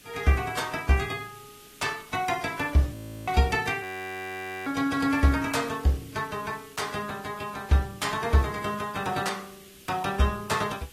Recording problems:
codec artefacts; AAC, log-spectral distance 7 dB
hiss; SNR 21 dB
audio freezing; at 3 s and at 4 s for 1 s

